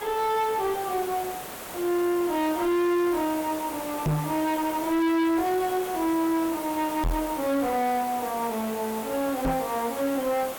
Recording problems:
distorted audio; hard clipping, uneven, signal-to-distortion ratio 7 dB
background hiss; SNR 10 dB
microphone bump; at 4 s, at 7 s and at 9.5 s; peak +4 dB vs average level

